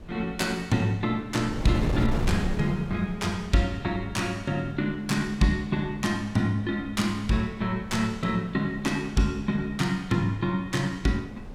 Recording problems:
wind on the microphone; below 230 Hz, SNR 10 dB

